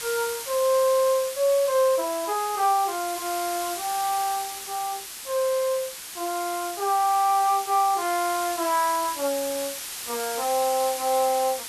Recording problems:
background hiss; slope +2 dB per octave, SNR 8 dB

